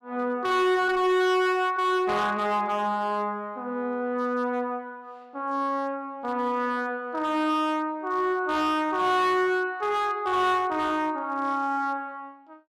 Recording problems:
distorted audio; hard clipping, signal-to-distortion ratio 10 dB

